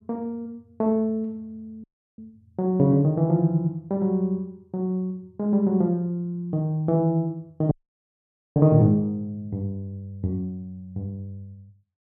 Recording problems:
dropout; at 2 s and at 7.5 s for 1 s

